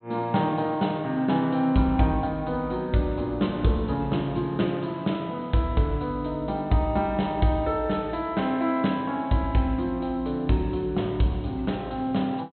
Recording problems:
treble missing; nothing above 4.1 kHz

